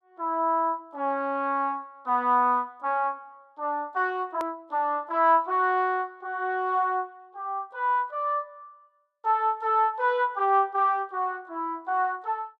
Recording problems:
click at an edit; at 4.5 s

